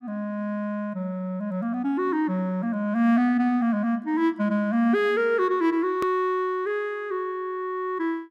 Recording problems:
edit click; at 6 s

